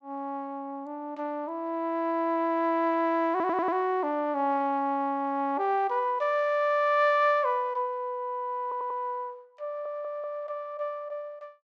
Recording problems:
stutter; at 3.5 s, at 8.5 s and at 9.5 s

